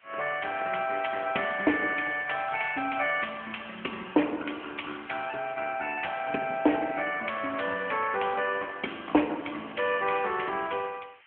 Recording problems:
telephone audio; 260 Hz to 3.2 kHz, AMR-NB
background hiss; SNR 27 dB

